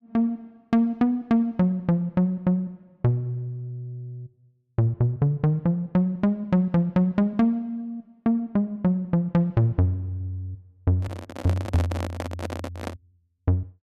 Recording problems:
handling noise; from 11 to 13 s; peak -3 dB vs average level

